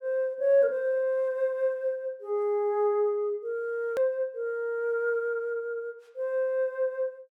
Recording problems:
edit click; at 4 s

